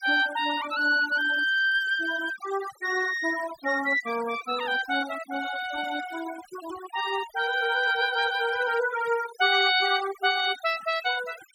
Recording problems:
noise reduction artefacts; signal-to-artefact ratio 16 dB

